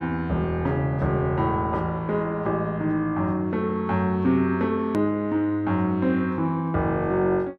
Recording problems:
hard cut with a click; at 5 s

